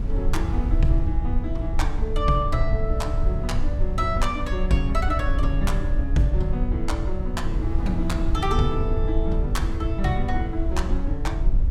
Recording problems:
rumble; below 62 Hz, SNR 0 dB
wind noise; below 120 Hz, SNR 7 dB

